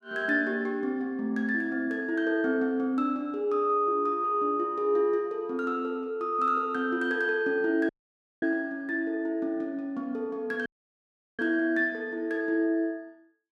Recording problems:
dropout; at 8 s for 0.5 s and at 11 s for 0.5 s

